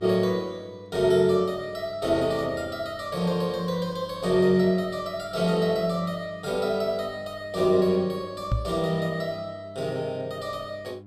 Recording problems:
hum; 50 Hz, harmonics up to 1 kHz, SNR 22 dB
microphone thump; at 8.5 s; peak +4 dB vs average level

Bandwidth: 14.5 kHz